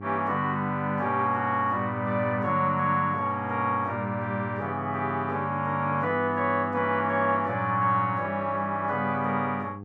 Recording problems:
hum; 50 Hz, harmonics up to 900 Hz, SNR 13 dB

